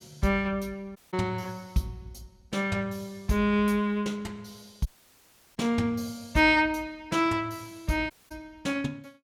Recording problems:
dropout; at 1 s, at 5 s for 0.5 s and at 8 s

